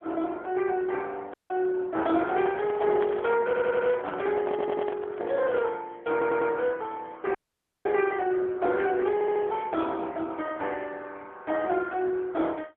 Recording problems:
telephone audio; 300 Hz to 3.4 kHz, AMR-NB
dropout; at 1.5 s and at 7.5 s for 0.5 s
microphone handling noise; from 2 to 5.5 s; peak -4 dB vs average level
audio stuttering; 4 times, first at 3.5 s

